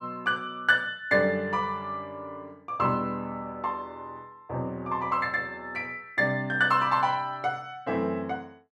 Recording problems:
none

